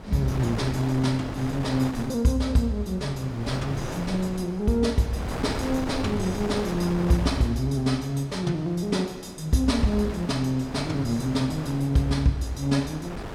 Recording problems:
wind on the microphone; below 850 Hz, SNR 9 dB

